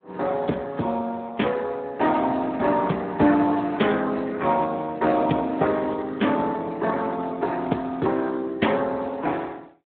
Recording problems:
phone line; 190 Hz to 3.6 kHz, Speex

